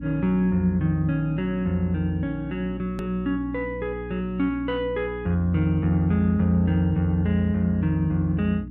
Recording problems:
electrical hum; 60 Hz, harmonics up to 300 Hz, SNR 13 dB
click at an edit; at 3 s

